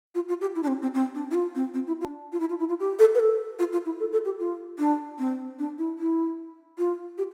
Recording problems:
edit click; at 2 s

